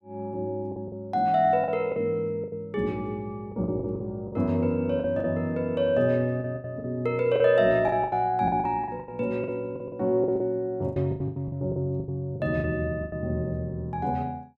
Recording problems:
packet loss; 13% of the sound replaced, filled with the last packet

